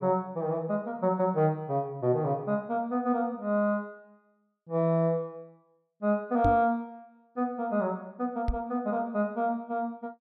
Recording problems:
microphone bump; at 6.5 s and at 8.5 s; peak +3 dB vs average level

